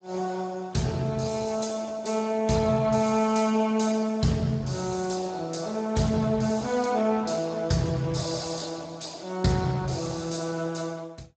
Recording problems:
lossy codec; Speex, log-spectral distance 7 dB, nothing above 7.6 kHz

